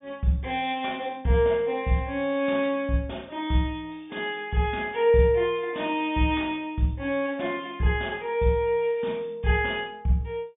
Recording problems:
treble missing; nothing above 3.6 kHz

